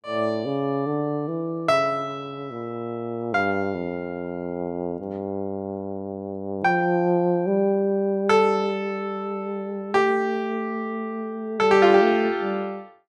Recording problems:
none

